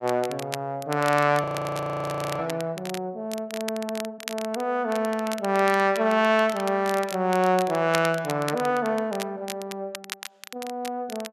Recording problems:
crackling; vinyl, SNR 13 dB
frozen audio; at 1.5 s for 1 s

